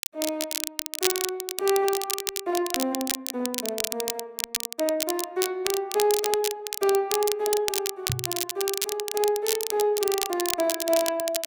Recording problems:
crackling; vinyl, SNR 2 dB
microphone thump; at 8 s; peak +1 dB vs average level

